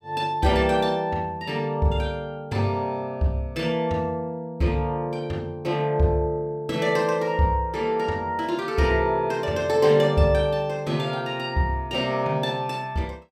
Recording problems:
none

